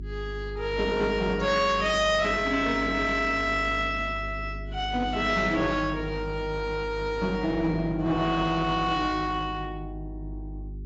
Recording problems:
codec artefacts; AAC, log-spectral distance 2 dB, nothing above 7.6 kHz
distortion; hard clipping, uneven, signal-to-distortion ratio 11 dB
hum; 50 Hz, harmonics up to 400 Hz, SNR 13 dB

